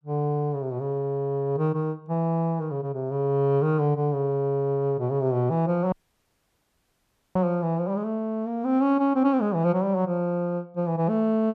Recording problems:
dropout; at 6 s for 1.5 s

